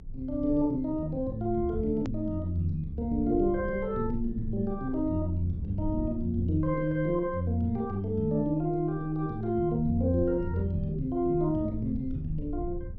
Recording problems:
low-pass filter; nothing above 7.5 kHz
rumble; below 82 Hz, strongest tone 22 Hz, SNR 13 dB
click at an edit; at 2 s

